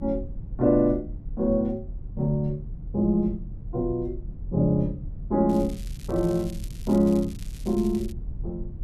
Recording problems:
low-frequency rumble; below 96 Hz, strongest tone 38 Hz, SNR 12 dB
crackling; from 5.5 to 8 s; loose cable, SNR 22 dB

